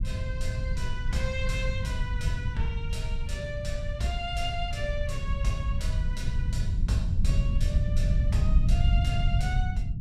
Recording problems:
low-frequency rumble; below 96 Hz, SNR -7 dB

